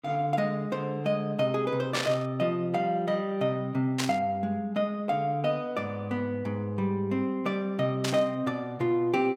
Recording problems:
burst of static; at 2 s, at 4 s and at 8 s; peak +2 dB vs average level

